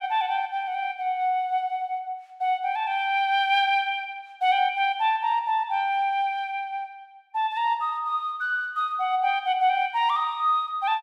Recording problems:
none

